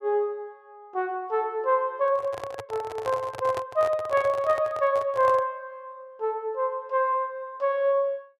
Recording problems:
microphone handling noise; from 2 to 5.5 s; peak -4 dB vs average level

